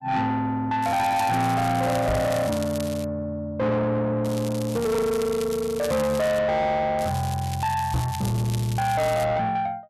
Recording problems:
distorted audio; soft clipping, signal-to-distortion ratio 8 dB
crackle; from 1 to 3 s, from 4.5 to 6.5 s and from 7 to 9 s; loose cable, SNR 15 dB
knock on the microphone; at 2 s and at 8 s; peak +4 dB vs average level

